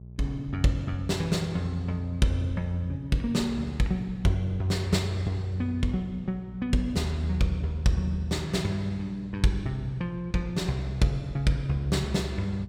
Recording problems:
electrical hum; 60 Hz, harmonics up to 420 Hz, SNR 16 dB

